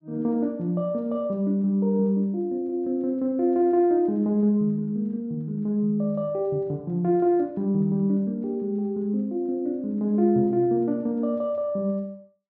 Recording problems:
none

